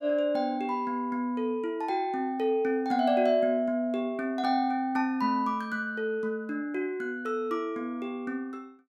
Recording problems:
none

